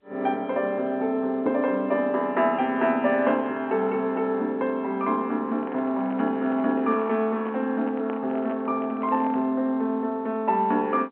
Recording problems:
telephone audio; 220 Hz to 3.2 kHz, G.711
microphone handling noise; from 5.5 to 9.5 s; peak -7 dB vs average level

